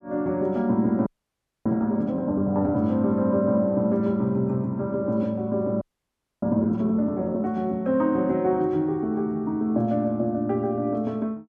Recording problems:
frozen audio; at 1 s for 0.5 s and at 6 s for 0.5 s

